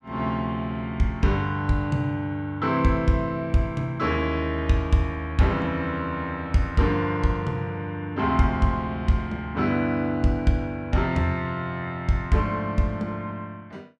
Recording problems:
none

